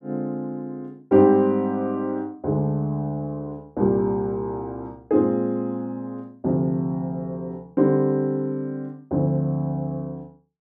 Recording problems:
none

